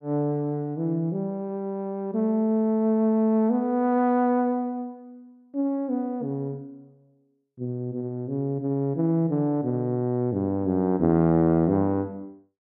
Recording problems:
none

